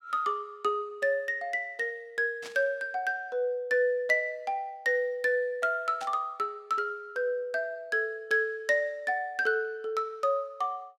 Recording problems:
burst of static; at 2.5 s and at 6 s; peak -9 dB vs average level

